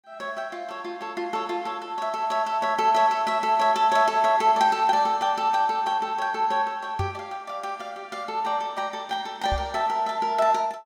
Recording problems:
microphone bump; at 7 s and at 9.5 s; peak -2 dB vs average level

